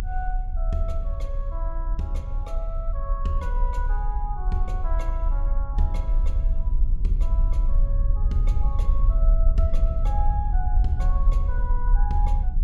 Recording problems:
low-frequency rumble; below 48 Hz, strongest tone 32 Hz, SNR -8 dB

